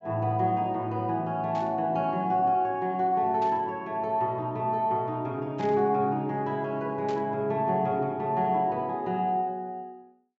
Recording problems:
treble cut off; nothing above 8 kHz
burst of static; 4 times, first at 1.5 s; peak -13 dB vs average level

